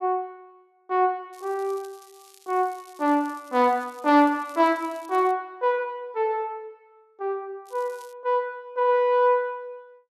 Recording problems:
crackle; from 1.5 to 5.5 s and at 7.5 s; loose cable, SNR 27 dB

